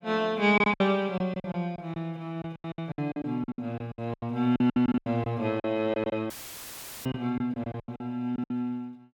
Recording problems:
packet loss; 18% of the sound replaced, filled with silence
audio cutting out; at 6.5 s for 1 s; filled with static

